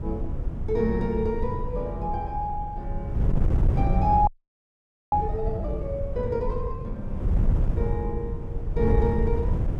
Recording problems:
wind on the microphone; below 110 Hz, SNR 0 dB
audio freezing; at 4.5 s for 1 s

